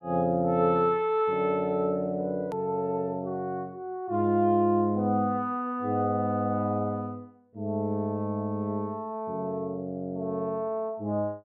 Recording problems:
edit click; at 2.5 s

